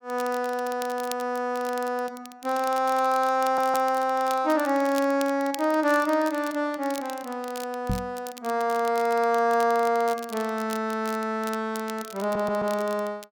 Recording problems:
crackling; vinyl, SNR 17 dB
stutter; at 3.5 s and at 12 s
microphone thump; at 8 s; peak +1 dB vs average level

